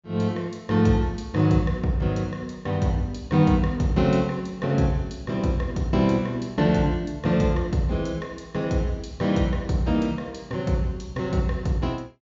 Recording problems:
treble cut off; nothing above 7.3 kHz

